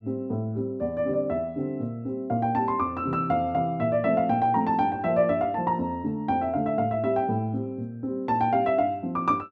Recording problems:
none

